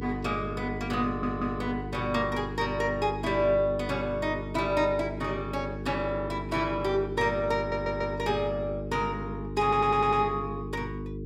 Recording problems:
electrical hum; 50 Hz, harmonics up to 450 Hz, SNR 8 dB
audio stuttering; at 1 s, at 7.5 s and at 9.5 s

